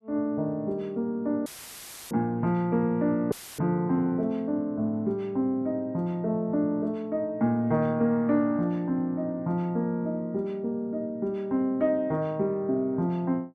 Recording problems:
audio cutting out; at 1.5 s for 0.5 s and at 3.5 s; filled with static

